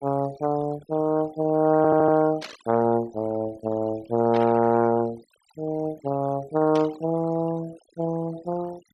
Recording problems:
denoising artefacts; signal-to-artefact ratio 22 dB
stutter; at 2 s
burst of static; at 2.5 s, at 4.5 s and at 7 s; peak -8 dB vs average level

